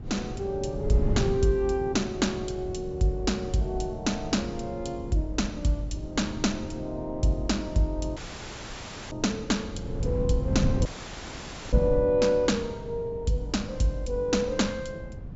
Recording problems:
treble cut off; nothing above 8 kHz
wind noise; below 170 Hz, SNR 8 dB
audio cutting out; at 8 s for 1 s and at 11 s for 1 s

